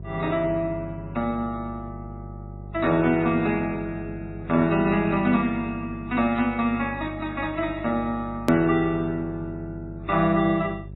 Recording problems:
lossy codec; AAC, then MP3, log-spectral distance 4 dB, nothing above 16.6 kHz
hum; 50 Hz, harmonics up to 550 Hz, SNR 14 dB
edit click; at 8.5 s

